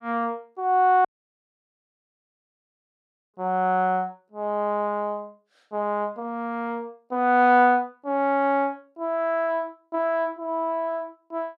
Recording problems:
dropout; at 1 s for 2.5 s

